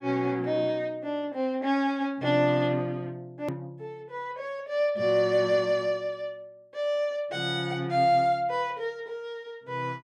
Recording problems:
hard cut with a click; at 3.5 s

